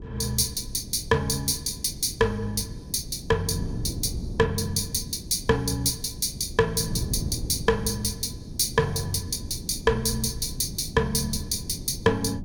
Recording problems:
wind on the microphone; below 200 Hz, SNR 11 dB

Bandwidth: 17.5 kHz